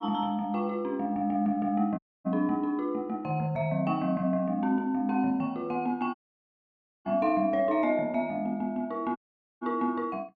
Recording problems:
audio cutting out; at 2 s, at 6 s for 1 s and at 9 s

